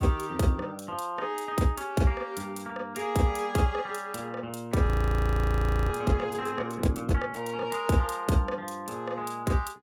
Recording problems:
audio freezing; at 5 s for 1 s

